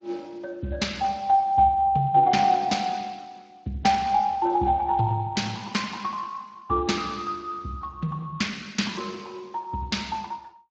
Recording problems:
lossy compression; Opus, then Speex, log-spectral distance 3 dB

